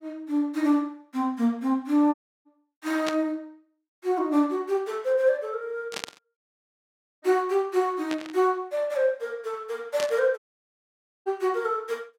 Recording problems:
dropout; at 2 s, at 6.5 s for 1 s and at 10 s for 1 s
static burst; 4 times, first at 3 s; peak -1 dB vs average level

